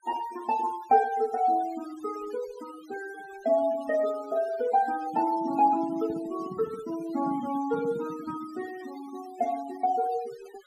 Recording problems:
denoising artefacts; signal-to-artefact ratio 17 dB
microphone handling noise; from 5 to 8.5 s; peak -8 dB vs average level

